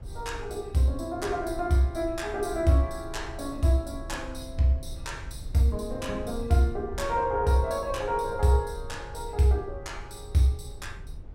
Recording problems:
rumble; below 84 Hz, SNR 14 dB

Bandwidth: 16 kHz